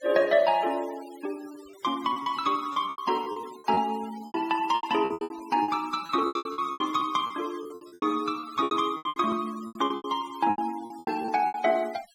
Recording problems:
noise reduction artefacts; signal-to-artefact ratio 19 dB
lost packets; 18% of the sound replaced, filled with repeated pitch periods

